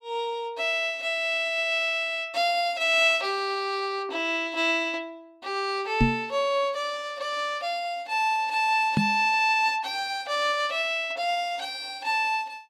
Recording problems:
microphone thump; at 6 s and at 9 s; peak +6 dB vs average level

